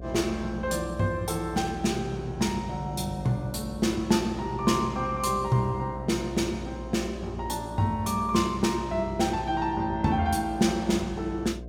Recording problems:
electrical hum; 60 Hz, harmonics up to 720 Hz, SNR 13 dB

